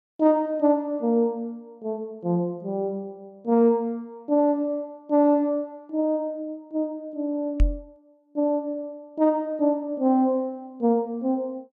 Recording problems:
knock on the microphone; at 7.5 s; peak +6 dB vs average level

